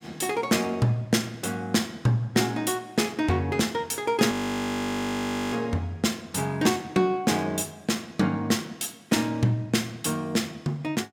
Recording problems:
frozen audio; at 4.5 s for 1 s

